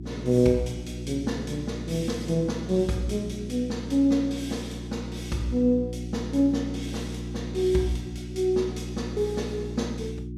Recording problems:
electrical hum; 60 Hz, harmonics up to 360 Hz, SNR 8 dB

